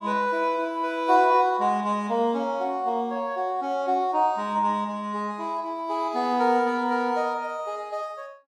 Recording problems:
none

